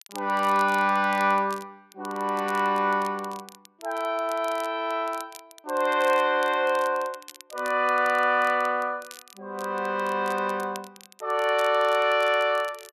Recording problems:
crackling; vinyl, SNR 22 dB

